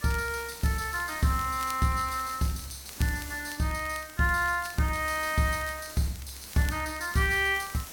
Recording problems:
hiss; slope -1 dB per octave, SNR 14 dB
crackling; vinyl, SNR 20 dB

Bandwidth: 17 kHz